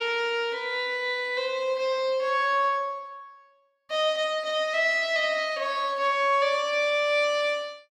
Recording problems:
none

